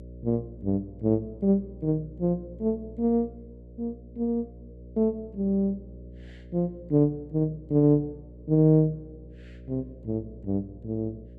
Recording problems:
hum; 60 Hz, harmonics up to 600 Hz, SNR 18 dB

